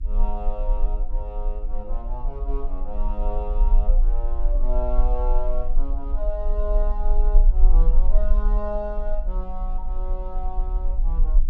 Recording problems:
hum; 50 Hz, harmonics up to 300 Hz, SNR 19 dB
low-frequency rumble; below 36 Hz, strongest tone 28 Hz, SNR -9 dB

